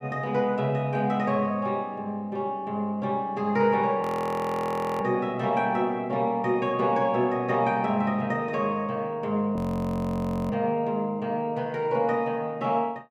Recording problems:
frozen audio; at 4 s for 1 s and at 9.5 s for 1 s

